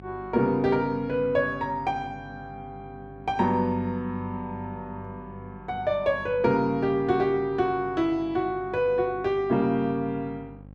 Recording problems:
hum; 50 Hz, harmonics up to 850 Hz, SNR 20 dB

